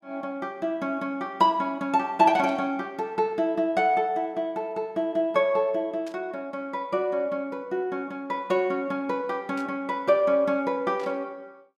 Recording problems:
static burst; 4 times, first at 2.5 s; peak -14 dB vs average level

